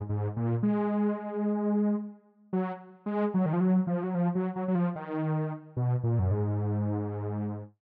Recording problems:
none

